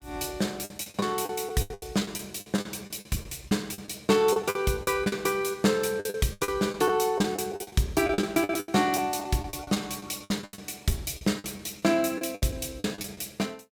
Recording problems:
lost packets; 16% of the sound replaced, filled with the last packet

